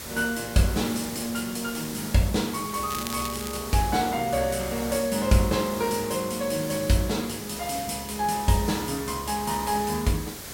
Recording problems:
hum; 50 Hz, harmonics up to 1.8 kHz, SNR 26 dB
background hiss; slope -2 dB per octave, SNR 10 dB
crackling; at 3 s; loose cable, SNR 10 dB

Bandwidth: 16.5 kHz